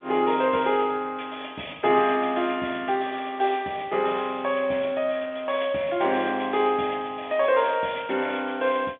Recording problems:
telephone audio; 220 Hz to 3.6 kHz, G.711

